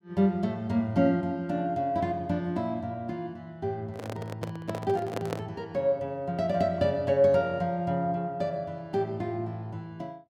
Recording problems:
handling noise; from 4 to 5.5 s; peak 0 dB vs average level

